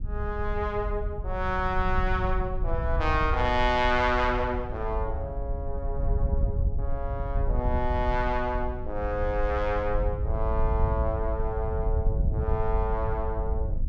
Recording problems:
wind on the microphone; below 76 Hz, SNR 2 dB

